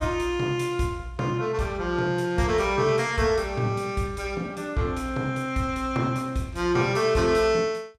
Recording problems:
none

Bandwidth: 14.5 kHz